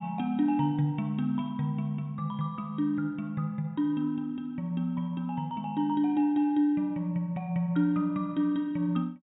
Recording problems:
treble missing; nothing above 4 kHz

